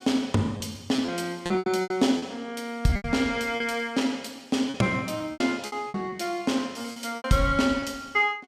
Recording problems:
packet loss; 11% of the sound replaced, filled with repeated pitch periods

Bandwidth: 15.5 kHz